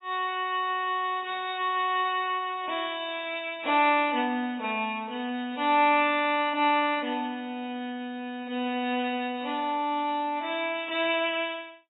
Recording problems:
lossy codec; AAC, log-spectral distance 3 dB, nothing above 3.8 kHz

